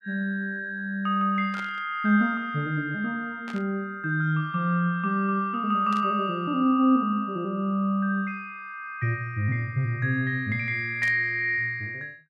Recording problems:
burst of static; 4 times, first at 1.5 s; peak -11 dB vs average level

